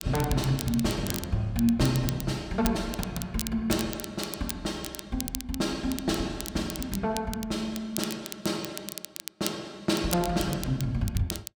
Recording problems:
crackling; vinyl, SNR 9 dB

